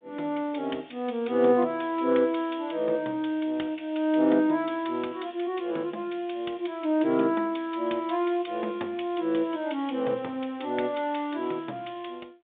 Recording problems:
telephone audio; 190 Hz to 3.7 kHz, G.726

